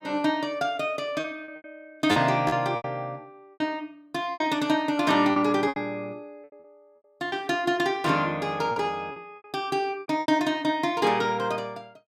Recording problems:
packet loss; 9% of the sound replaced, filled with repeated pitch periods

